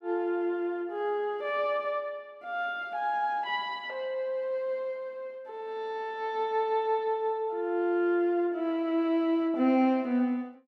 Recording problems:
none

